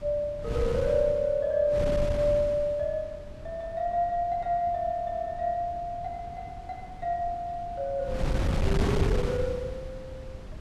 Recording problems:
wind noise; below 210 Hz, SNR 4 dB

